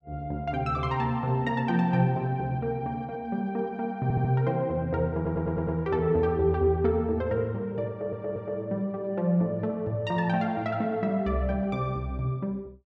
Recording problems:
stutter; at 4 s, at 5 s and at 8 s

